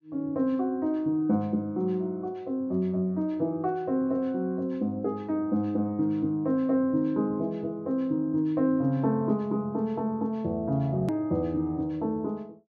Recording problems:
treble missing; nothing above 6.8 kHz
hard cut with a click; at 11 s

